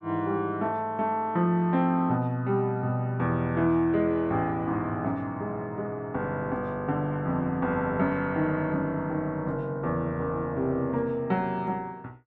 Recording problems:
none

